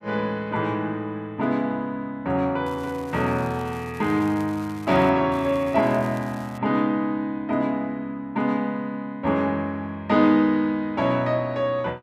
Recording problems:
crackle; from 2.5 to 5 s and from 5.5 to 6.5 s; loose cable, SNR 25 dB

